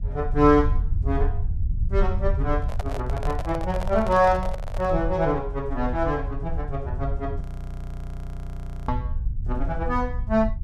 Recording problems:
low-frequency rumble; below 74 Hz, SNR 5 dB
handling noise; from 2.5 to 5 s; peak -5 dB vs average level
frozen audio; at 7.5 s for 1.5 s

